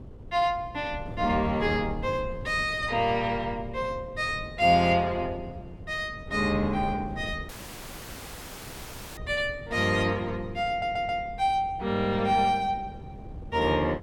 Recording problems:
wind noise; below 200 Hz, SNR 15 dB
dropout; at 7.5 s for 1.5 s
stutter; at 11 s

